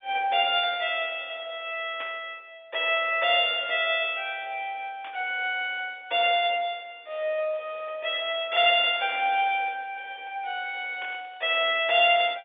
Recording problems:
telephone audio; 320 Hz to 3.6 kHz, G.711
burst of static; 4 times, first at 2 s; peak -11 dB vs average level

